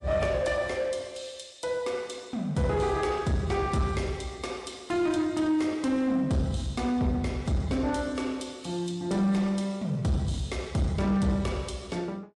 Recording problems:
lossy codec; MP3, log-spectral distance 2 dB, nothing above 11 kHz
distorted audio; soft clipping, signal-to-distortion ratio 12 dB

